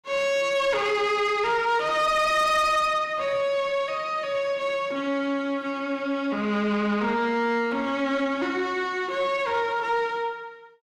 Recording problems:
distortion; soft clipping, signal-to-distortion ratio 10 dB

